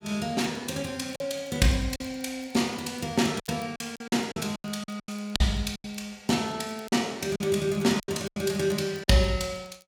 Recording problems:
crackling; vinyl, SNR 29 dB
packet loss; 9% of the sound replaced, filled with silence

